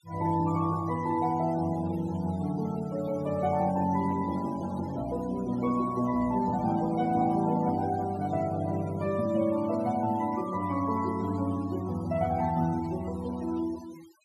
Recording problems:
denoising artefacts; signal-to-artefact ratio 19 dB

